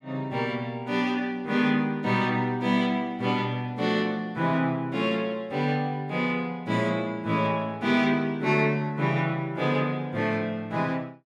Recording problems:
none

